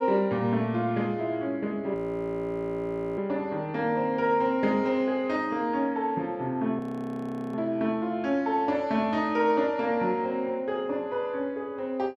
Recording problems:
frozen audio; at 2 s for 1 s and at 7 s for 0.5 s

